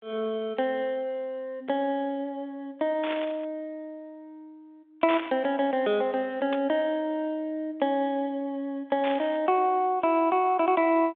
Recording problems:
telephone audio; 240 Hz to 3.6 kHz, G.726
static burst; 4 times, first at 3 s; peak -3 dB vs average level

